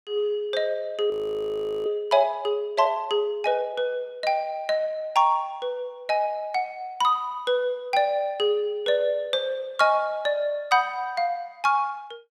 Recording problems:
audio freezing; at 1 s for 1 s

